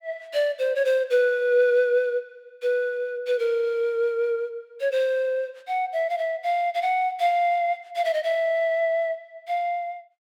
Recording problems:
none

